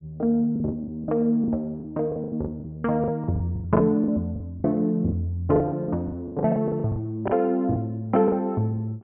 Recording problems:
low-pass filter; nothing above 3.2 kHz
packet loss; 15% of the sound replaced, filled with the last packet

